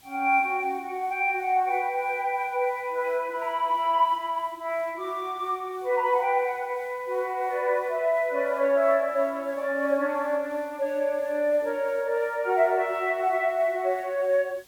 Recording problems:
hiss; SNR 29 dB

